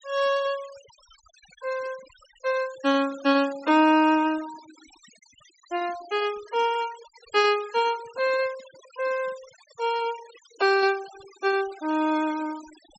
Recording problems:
treble cut off; nothing above 8 kHz
noise reduction artefacts; signal-to-artefact ratio 20 dB

